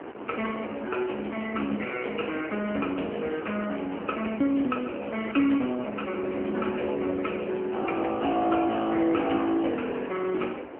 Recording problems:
telephone audio; 240 Hz to 3.1 kHz, AMR-NB
wind on the microphone; below 890 Hz, SNR 11 dB

